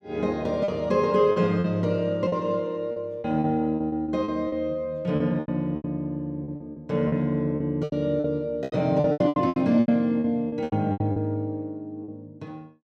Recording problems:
packet loss; 14% of the sound replaced, filled with repeated pitch periods

